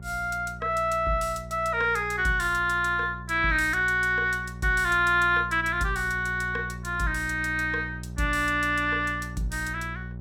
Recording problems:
hum; 60 Hz, harmonics up to 600 Hz, SNR 14 dB

